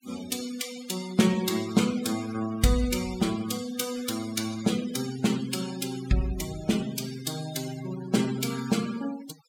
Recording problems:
denoising artefacts; signal-to-artefact ratio 12 dB

